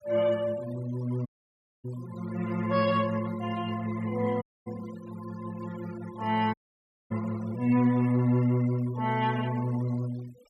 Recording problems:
denoising artefacts; signal-to-artefact ratio 21 dB
audio cutting out; at 1.5 s for 0.5 s, at 4.5 s and at 6.5 s for 0.5 s

